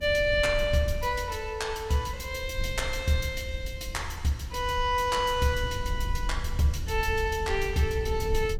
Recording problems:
low-frequency rumble; below 80 Hz, SNR 8 dB

